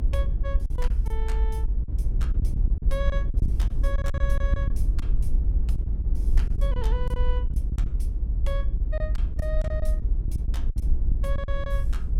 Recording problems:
rumble; below 56 Hz, SNR -11 dB
lost packets; 11% of the sound replaced, filled with silence

